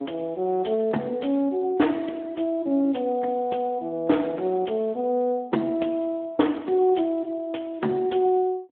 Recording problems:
telephone audio; 190 Hz to 3.4 kHz, Speex

